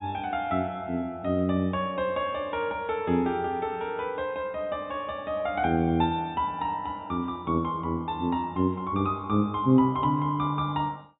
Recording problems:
treble missing; nothing above 4 kHz

